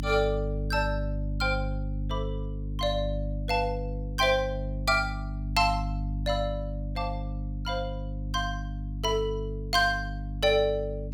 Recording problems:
hum; 50 Hz, harmonics up to 300 Hz, SNR 5 dB

